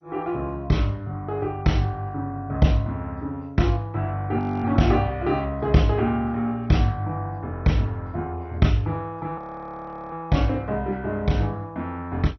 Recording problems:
lossy compression; MP2, log-spectral distance 2 dB, nothing above 6 kHz
frozen audio; at 4.5 s and at 9.5 s for 0.5 s

